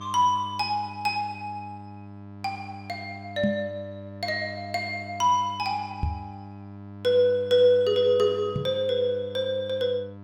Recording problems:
hum; 50 Hz, harmonics up to 1.4 kHz, SNR 16 dB
microphone bump; at 3.5 s, at 6 s and at 8.5 s; peak +2 dB vs average level

